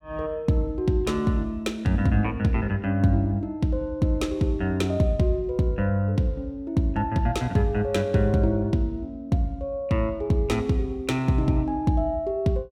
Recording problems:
none

